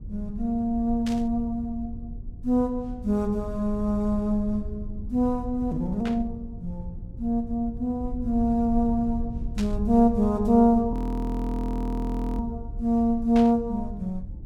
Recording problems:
rumble; below 78 Hz, SNR 11 dB
burst of static; 4 times, first at 1 s; peak -8 dB vs average level
frozen audio; at 11 s for 1.5 s

